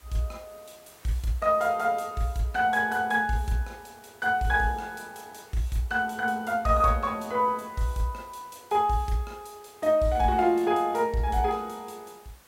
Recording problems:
background hiss; slope -2 dB per octave, SNR 28 dB

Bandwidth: 16 kHz